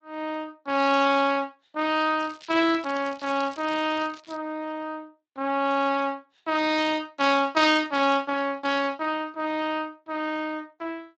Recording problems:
lossy compression; MP3, then Speex, log-spectral distance 5 dB
crackle; from 2 to 4.5 s; loose cable, SNR 21 dB

